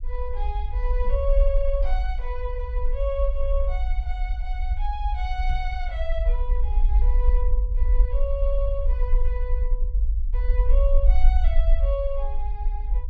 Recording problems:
rumble; below 48 Hz, SNR -7 dB
microphone thump; at 1 s and at 5.5 s; peak -1 dB vs average level

